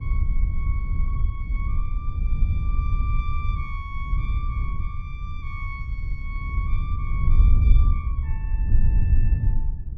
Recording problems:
low-frequency rumble; below 78 Hz, SNR -4 dB
wind on the microphone; below 70 Hz, SNR -15 dB

